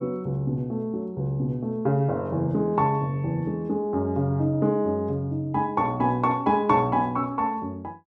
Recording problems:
none

